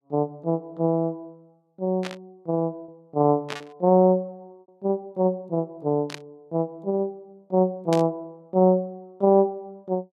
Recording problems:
lost packets; 1% of the sound replaced, filled with repeated pitch periods
burst of static; 4 times, first at 2 s; peak -5 dB vs average level

